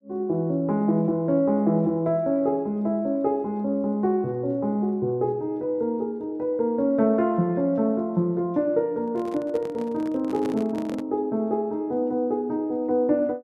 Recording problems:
microphone handling noise; from 9 to 11 s; peak -6 dB vs average level

